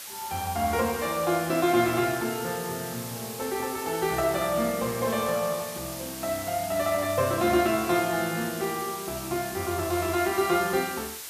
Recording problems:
background hiss; slope +2 dB per octave, SNR 9 dB

